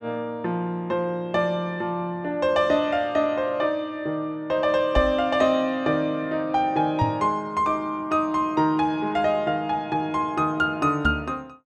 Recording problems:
microphone thump; at 5 s, at 7 s and at 11 s; peak +3 dB vs average level

